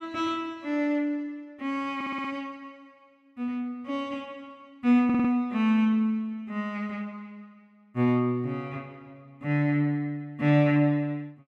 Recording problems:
stutter; at 2 s and at 5 s

